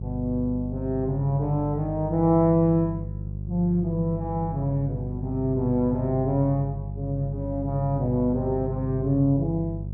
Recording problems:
electrical hum; 50 Hz, harmonics up to 400 Hz, SNR 8 dB

